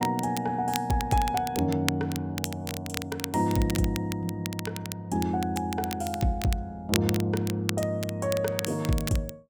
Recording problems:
crackling; vinyl, SNR 8 dB

